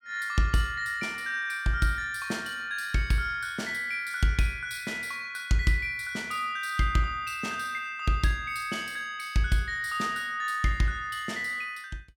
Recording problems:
none

